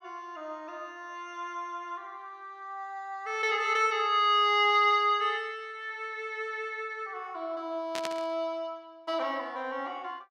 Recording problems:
static burst; at 8 s; peak -2 dB vs average level

